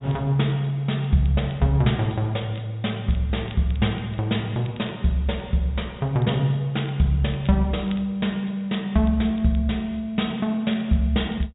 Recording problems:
treble missing; nothing above 4 kHz
crackle; vinyl, SNR 27 dB

